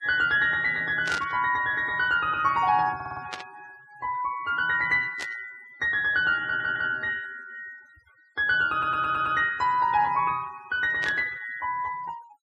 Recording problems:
noise reduction artefacts; signal-to-artefact ratio 23 dB
static burst; 4 times, first at 1 s; peak -5 dB vs average level
audio stuttering; at 3 s, at 6.5 s and at 8.5 s

